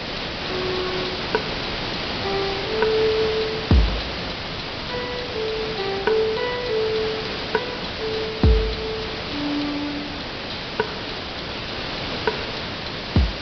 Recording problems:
treble missing; nothing above 5.5 kHz
lossy compression; MP2, log-spectral distance 13 dB
background hiss; SNR 2 dB

